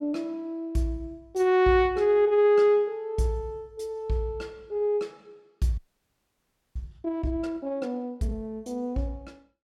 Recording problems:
audio freezing; at 6 s for 1 s

